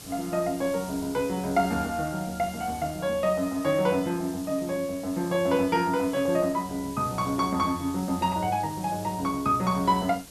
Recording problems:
background hiss; SNR 16 dB

